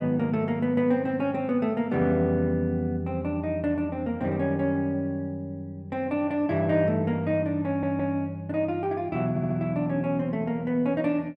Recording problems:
stutter; at 7.5 s and at 9.5 s

